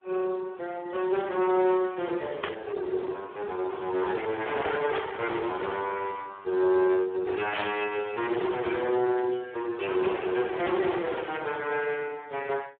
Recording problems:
phone line; 320 Hz to 3.4 kHz, Speex
distorted audio; hard clipping, signal-to-distortion ratio 10 dB
static burst; at 2.5 s, at 5 s and at 7.5 s; peak +2 dB vs average level

